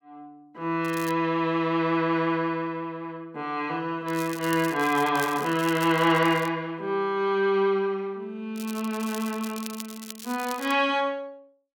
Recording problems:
crackling; at 1 s, from 4 to 6.5 s and from 8.5 to 11 s; loose cable, SNR 15 dB

